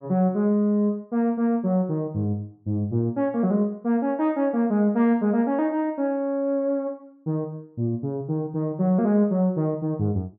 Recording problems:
none

